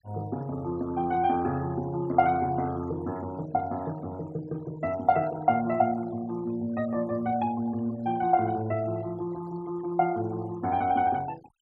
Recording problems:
noise reduction artefacts; signal-to-artefact ratio 21 dB

